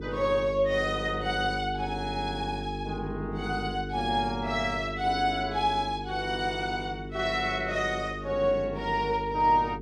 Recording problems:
hum; 50 Hz, harmonics up to 450 Hz, SNR 9 dB

